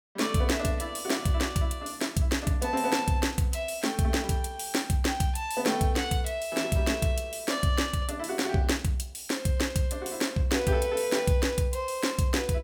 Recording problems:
none

